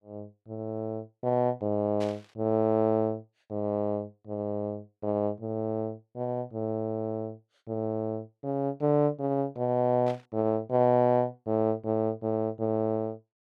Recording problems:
static burst; at 2 s and at 10 s; peak -10 dB vs average level

